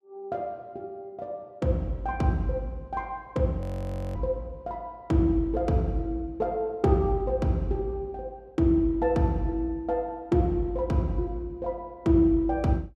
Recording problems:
frozen audio; at 3.5 s for 0.5 s

